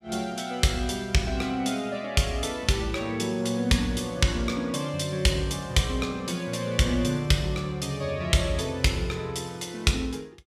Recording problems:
none

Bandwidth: 14 kHz